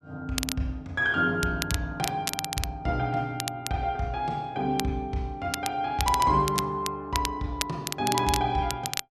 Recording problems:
crackling; vinyl, SNR 6 dB

